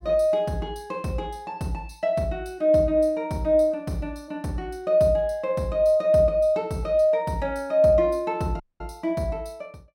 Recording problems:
audio cutting out; at 8.5 s

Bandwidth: 16.5 kHz